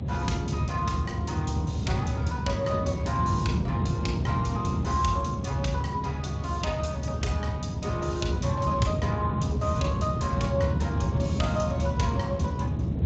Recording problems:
lossy codec; Speex, then MP2, log-spectral distance 3 dB, nothing above 7.3 kHz
low-frequency rumble; below 200 Hz, SNR -2 dB

